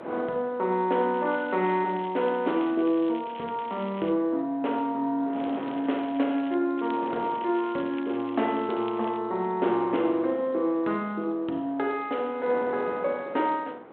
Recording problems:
telephone audio; 220 Hz to 3.5 kHz, G.726
wind noise; below 900 Hz, SNR 16 dB
crackle; from 1 to 4 s, from 5.5 to 6.5 s and from 7 to 9 s; loose cable, SNR 22 dB

